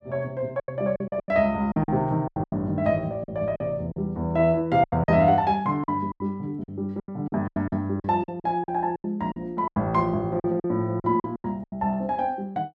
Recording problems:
lost packets; 14% of the sound replaced, filled with silence

